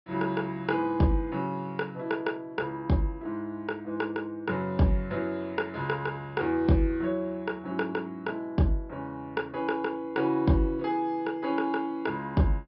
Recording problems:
treble cut off; nothing above 5.4 kHz

